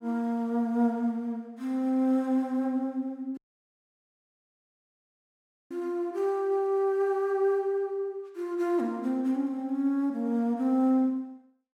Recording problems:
audio cutting out; at 3.5 s for 2.5 s

